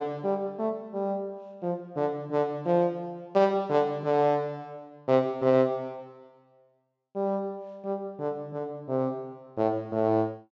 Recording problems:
low-pass filter; nothing above 8 kHz

